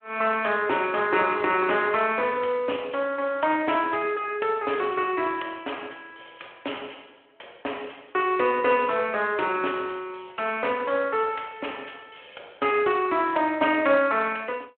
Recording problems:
phone line; 320 Hz to 3.2 kHz, Speex

